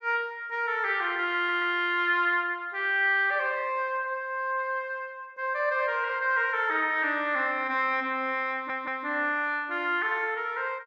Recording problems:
stutter; at 1.5 s and at 8.5 s

